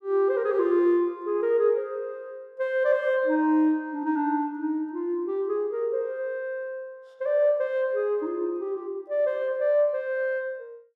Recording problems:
none

